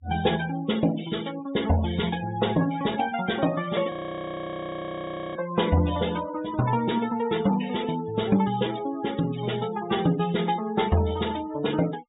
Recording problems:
treble cut off; nothing above 4 kHz
denoising artefacts; signal-to-artefact ratio 16 dB
frozen audio; at 4 s for 1.5 s

